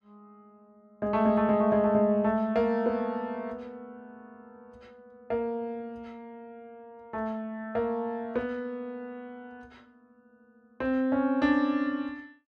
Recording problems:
none

